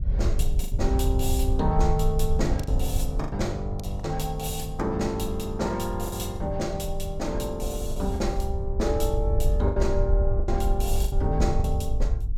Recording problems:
wind on the microphone; below 68 Hz, SNR 0 dB
lost packets; 6% of the sound replaced, filled with the last packet

